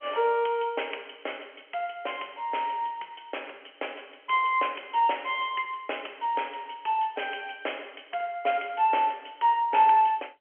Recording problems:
phone line; 340 Hz to 3.3 kHz, G.711

